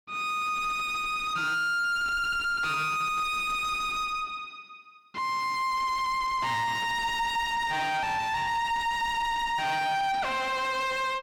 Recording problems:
distorted audio; soft clipping, signal-to-distortion ratio 3 dB

